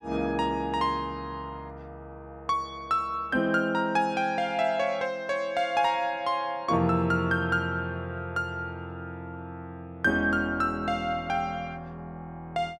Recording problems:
none

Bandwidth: 14 kHz